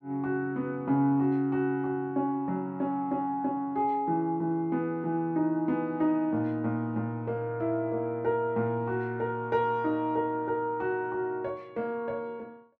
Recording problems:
none

